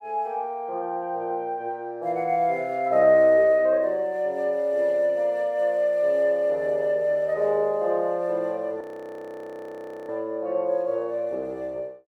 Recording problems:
frozen audio; at 9 s for 1.5 s

